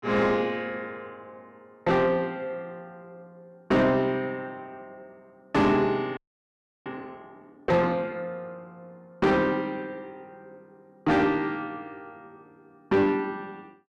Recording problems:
distorted audio; soft clipping, signal-to-distortion ratio 7 dB
audio freezing; at 6 s for 0.5 s

